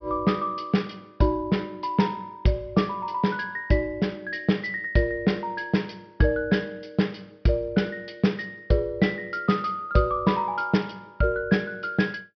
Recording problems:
treble missing; nothing above 5.5 kHz

